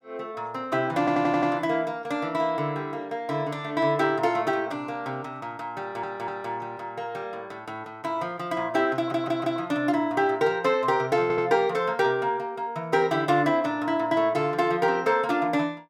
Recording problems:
stutter; 4 times, first at 1 s

